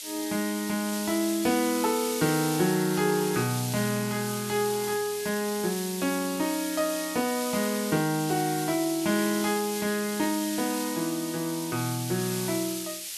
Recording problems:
hiss; SNR 6 dB

